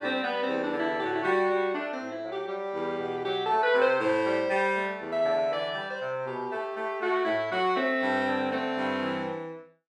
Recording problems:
none

